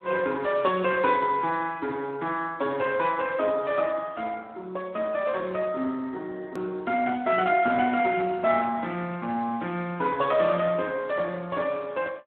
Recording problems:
phone line; 190 Hz to 3.5 kHz, Speex
hard cut with a click; at 6.5 s

